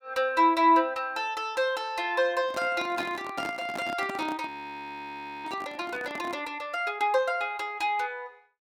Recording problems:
handling noise; from 2.5 to 6.5 s; peak -5 dB vs average level
frozen audio; at 4.5 s for 1 s

